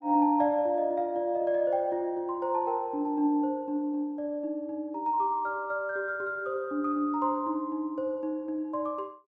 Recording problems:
none

